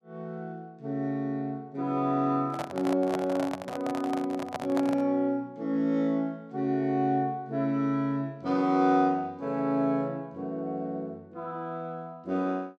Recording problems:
handling noise; from 2.5 to 5 s; peak 0 dB vs average level

